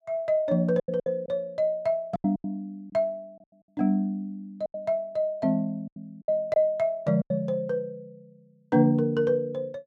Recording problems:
lost packets; 8% of the sound replaced, filled with silence

